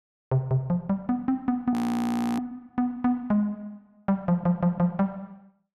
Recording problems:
frozen audio; at 1.5 s for 0.5 s
audio stuttering; at 4.5 s

